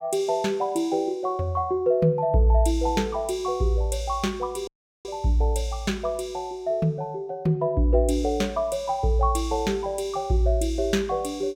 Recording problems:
dropout; at 4.5 s

